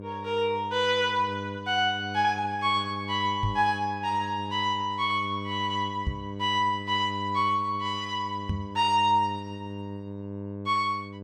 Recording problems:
mains hum; 50 Hz, harmonics up to 1.1 kHz, SNR 11 dB
knock on the microphone; at 3.5 s, at 6 s and at 8.5 s; peak +2 dB vs average level

